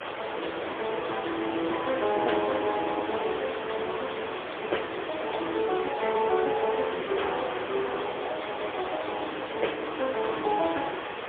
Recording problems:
telephone audio; 300 Hz to 3.5 kHz, AMR-NB, then MP3
hiss; SNR 5 dB

